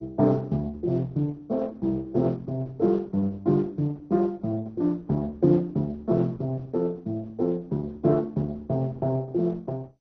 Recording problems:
lossy codec; Opus, then MP2, log-spectral distance 2 dB, nothing above 6 kHz

